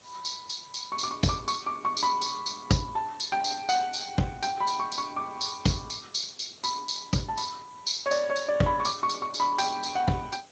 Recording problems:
lossy compression; Speex, log-spectral distance 8 dB
background hiss; slope -2 dB per octave, SNR 26 dB

